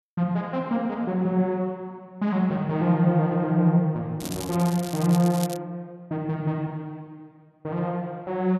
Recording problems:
crackling; from 4 to 5.5 s; loose cable, SNR 13 dB

